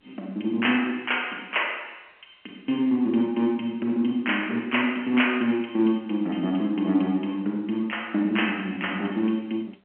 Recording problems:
phone line; 240 Hz to 3.1 kHz, G.711

